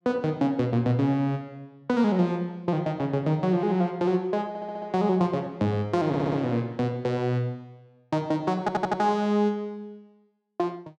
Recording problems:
stutter; at 4.5 s, at 6 s and at 8.5 s

